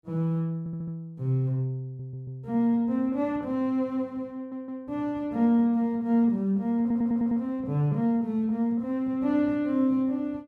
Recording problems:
stutter; 4 times, first at 0.5 s

